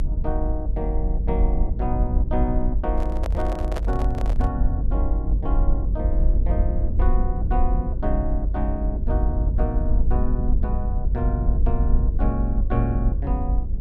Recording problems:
hum; 50 Hz, harmonics up to 550 Hz, SNR 21 dB
low-frequency rumble; below 56 Hz, SNR -5 dB
microphone handling noise; from 3 to 4.5 s; peak +2 dB vs average level

